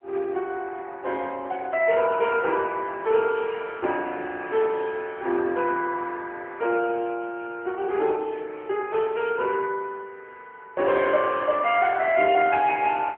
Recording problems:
phone line; 300 Hz to 3.1 kHz, AMR-NB

